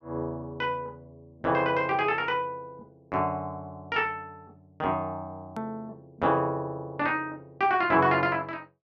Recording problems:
click at an edit; at 5.5 s

